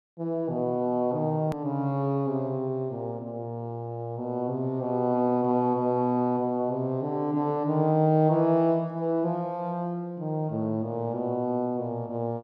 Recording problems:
edit click; at 1.5 s

